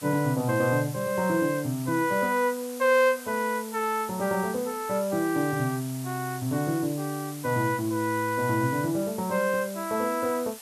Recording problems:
hiss; SNR 14 dB

